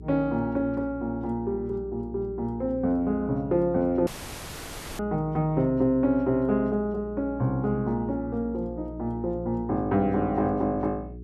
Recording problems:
hum; 60 Hz, harmonics up to 420 Hz, SNR 15 dB
dropout; at 4 s for 1 s

